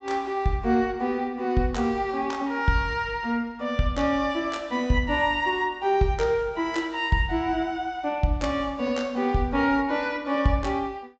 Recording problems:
treble cut off; nothing above 8 kHz

